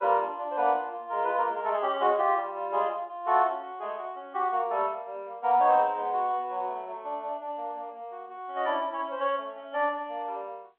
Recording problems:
telephone audio; 300 Hz to 3.5 kHz, G.711

